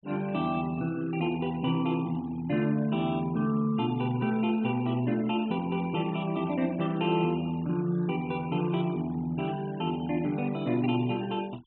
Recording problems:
treble cut off; nothing above 3.9 kHz
denoising artefacts; signal-to-artefact ratio 21 dB

